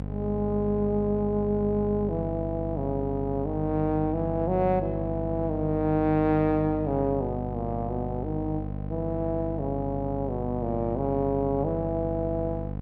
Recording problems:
hum; 50 Hz, harmonics up to 800 Hz, SNR 6 dB

